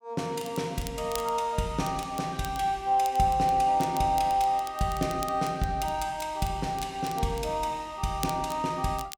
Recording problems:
crackling; vinyl, SNR 17 dB

